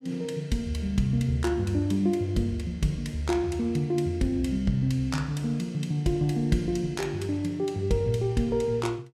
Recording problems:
none

